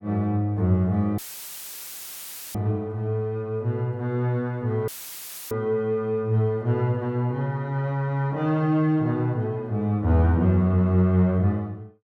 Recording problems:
audio cutting out; at 1 s for 1.5 s and at 5 s for 0.5 s; filled with static

